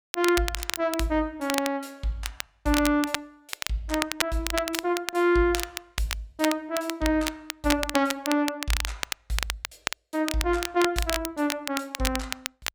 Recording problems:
crackle; vinyl, SNR 5 dB

